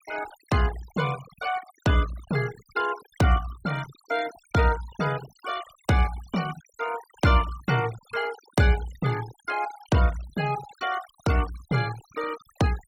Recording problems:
noise reduction artefacts; signal-to-artefact ratio 16 dB

